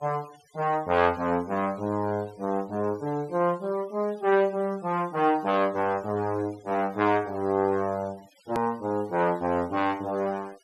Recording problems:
denoising artefacts; signal-to-artefact ratio 25 dB
click at an edit; at 8.5 s

